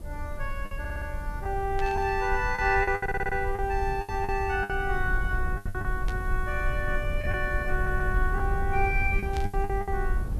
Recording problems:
hiss; SNR 27 dB
low-frequency rumble; below 68 Hz, SNR 4 dB
packet loss; 9% of the sound replaced, filled with the last packet
audio stuttering; at 1 s, at 3 s and at 7.5 s
static burst; at 2 s, at 6 s and at 9.5 s; peak -7 dB vs average level

